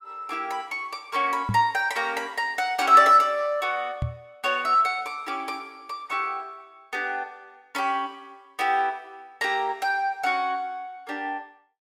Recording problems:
microphone thump; at 1.5 s and at 4 s; peak 0 dB vs average level

